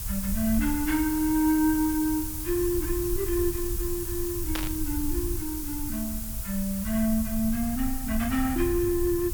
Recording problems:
hiss; slope +1 dB per octave, SNR 6 dB
rumble; below 76 Hz, SNR 9 dB
burst of static; at 4.5 s; peak -1 dB vs average level

